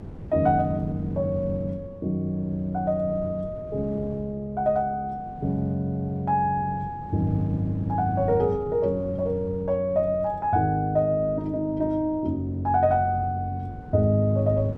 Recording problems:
hum; 50 Hz, harmonics up to 500 Hz, SNR 24 dB
wind noise; below 250 Hz, SNR 17 dB

